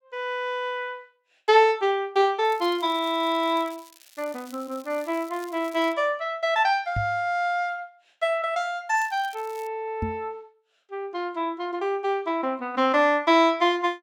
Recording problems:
crackling; from 2.5 to 6 s and at 9 s; loose cable, SNR 24 dB
microphone bump; at 7 s and at 10 s; peak -1 dB vs average level

